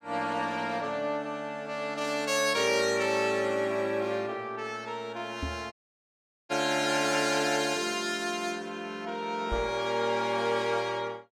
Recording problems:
knock on the microphone; at 5.5 s and at 9.5 s; peak -3 dB vs average level
audio cutting out; at 5.5 s for 1 s

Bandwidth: 17 kHz